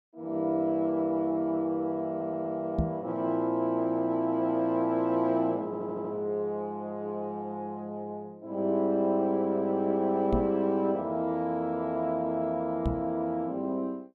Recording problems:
stutter; at 2 s and at 5.5 s
microphone bump; at 3 s, at 10 s and at 13 s; peak +4 dB vs average level

